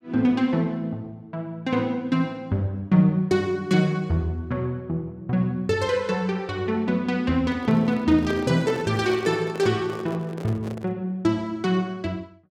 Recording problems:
microphone handling noise; from 7.5 to 11 s; peak -4 dB vs average level

